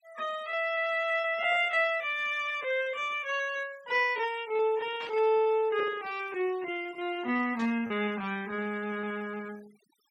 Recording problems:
denoising artefacts; signal-to-artefact ratio 24 dB
packet loss; 18% of the sound replaced, filled with repeated pitch periods
static burst; at 5 s and at 7.5 s; peak -11 dB vs average level

